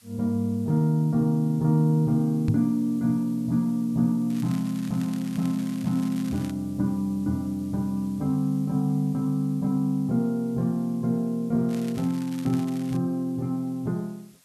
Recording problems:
hiss; slope +1 dB per octave, SNR 29 dB
microphone thump; at 2.5 s; peak +6 dB vs average level
crackle; from 4.5 to 6.5 s and from 12 to 13 s; loose cable, SNR 21 dB

